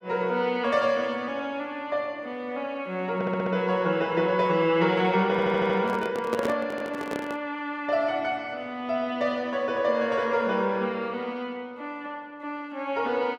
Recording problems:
audio stuttering; at 3 s, at 5.5 s and at 6.5 s
handling noise; from 5.5 to 7.5 s; peak +1 dB vs average level

